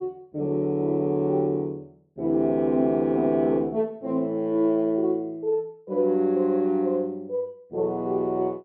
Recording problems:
none

